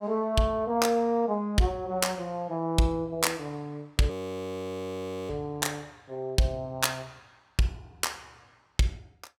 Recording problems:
audio freezing; at 4 s for 1 s

